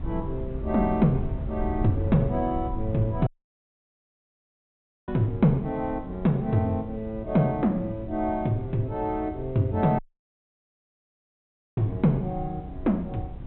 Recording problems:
treble missing; nothing above 3.9 kHz
hiss; SNR 27 dB
wind on the microphone; below 110 Hz, SNR 11 dB
audio cutting out; at 3.5 s for 2 s and at 10 s for 2 s

